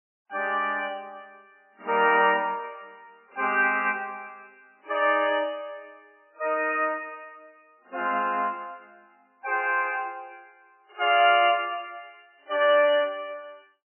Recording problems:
lossy codec; AAC, then MP3, log-spectral distance 3 dB, nothing above 2.4 kHz

